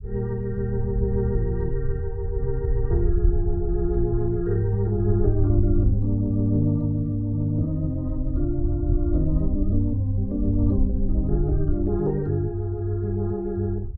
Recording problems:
rumble; below 74 Hz, SNR 3 dB

